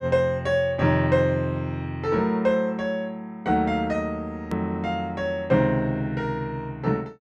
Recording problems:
edit click; at 4.5 s

